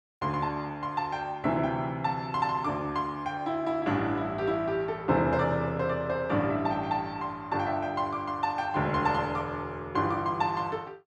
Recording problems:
none

